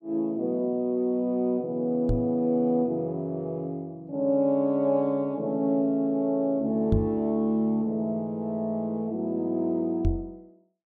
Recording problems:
knock on the microphone; at 2 s, at 7 s and at 10 s; peak +5 dB vs average level

